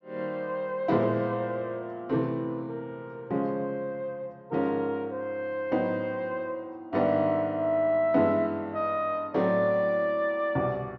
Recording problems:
treble missing; nothing above 8 kHz

